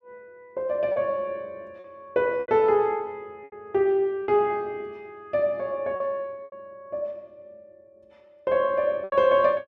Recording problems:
packet loss; 6% of the sound replaced, filled with repeated pitch periods

